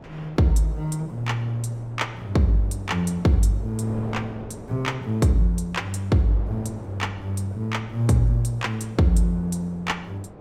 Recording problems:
wind on the microphone; below 590 Hz, SNR 18 dB

